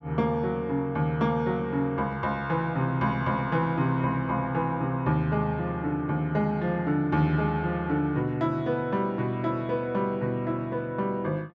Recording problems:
none

